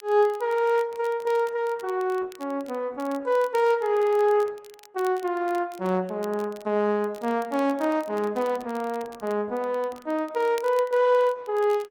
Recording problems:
lossy compression; Opus, log-spectral distance 2 dB
crackle; vinyl, SNR 25 dB

